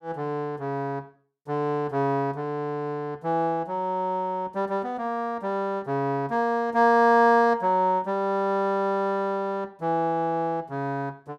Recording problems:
none

